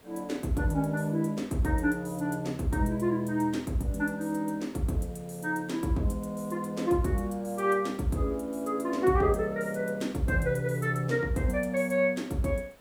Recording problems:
hiss; slope -5 dB per octave, SNR 27 dB

